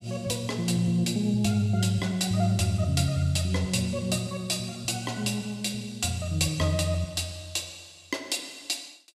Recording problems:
none

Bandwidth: 14.5 kHz